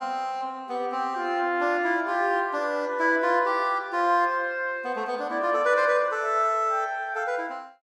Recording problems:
none

